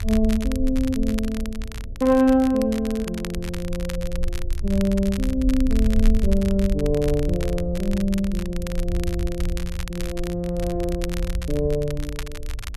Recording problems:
hum; 60 Hz, harmonics up to 660 Hz, SNR 21 dB
low-frequency rumble; below 62 Hz, SNR 6 dB
crackle; vinyl, SNR 15 dB

